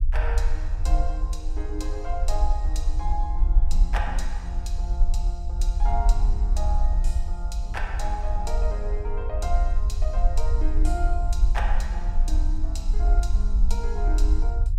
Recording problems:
rumble; below 48 Hz, SNR -9 dB

